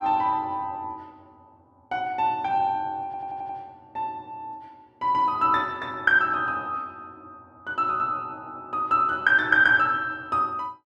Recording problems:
audio stuttering; at 3 s

